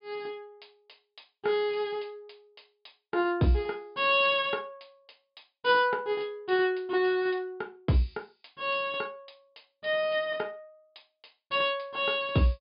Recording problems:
treble missing; nothing above 5 kHz

